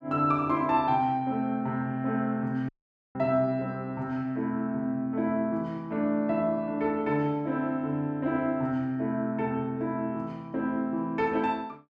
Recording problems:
audio cutting out; at 2.5 s

